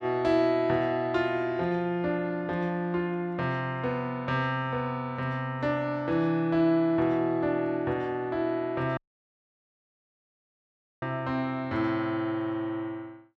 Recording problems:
audio cutting out; at 9 s for 2 s

